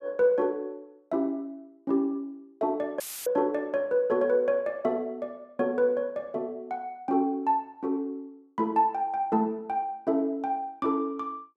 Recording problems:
dropout; at 3 s; filled with static

